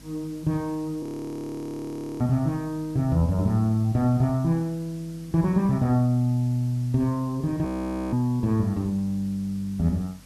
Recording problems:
electrical hum; 50 Hz, harmonics up to 300 Hz, SNR 26 dB
background hiss; slope -1 dB per octave, SNR 26 dB
frozen audio; at 1 s for 1 s and at 7.5 s

